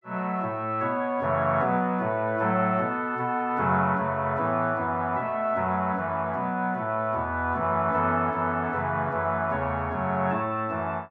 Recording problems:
none

